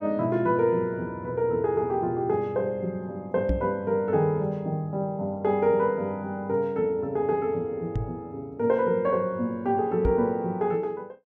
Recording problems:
knock on the microphone; at 3.5 s, at 8 s and at 10 s; peak +2 dB vs average level

